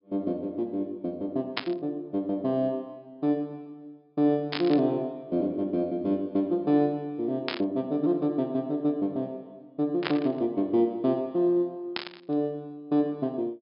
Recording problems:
treble missing; nothing above 5.5 kHz
static burst; 5 times, first at 1.5 s; peak +3 dB vs average level

